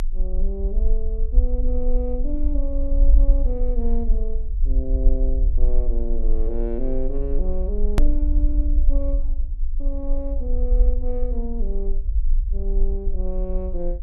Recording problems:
low-frequency rumble; below 42 Hz, strongest tone 22 Hz, SNR -8 dB
hard cut with a click; at 8 s

